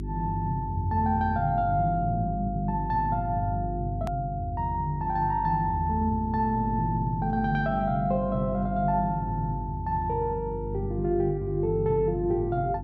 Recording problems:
hum; 50 Hz, harmonics up to 400 Hz, SNR 8 dB
hard cut with a click; at 4 s

